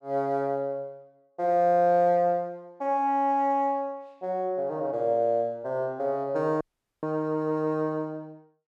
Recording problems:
dropout; at 6.5 s

